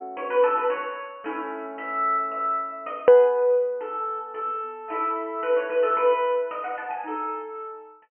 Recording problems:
low-pass filter; nothing above 3 kHz
hard cut with a click; at 3 s

